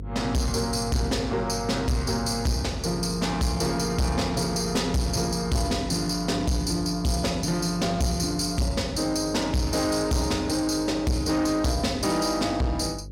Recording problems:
distortion; soft clipping, signal-to-distortion ratio 7 dB
electrical hum; 50 Hz, harmonics up to 550 Hz, SNR 14 dB

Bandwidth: 16.5 kHz